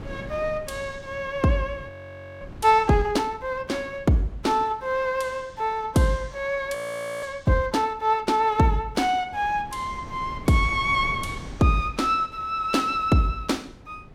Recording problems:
wind on the microphone; below 310 Hz, SNR 19 dB
frozen audio; at 2 s for 0.5 s and at 7 s

